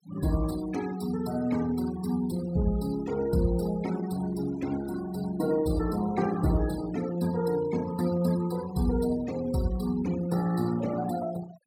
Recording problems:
noise reduction artefacts; signal-to-artefact ratio 16 dB

